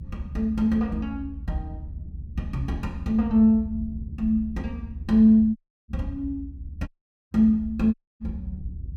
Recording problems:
rumble; below 78 Hz, SNR 13 dB
dropout; at 5.5 s, at 7 s and at 8 s

